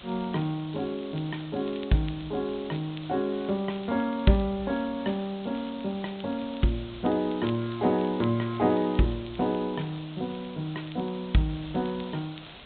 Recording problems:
treble missing; nothing above 4 kHz
background hiss; SNR 17 dB
crackling; vinyl, SNR 24 dB

